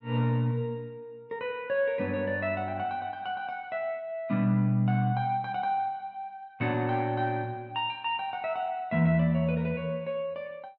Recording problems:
none

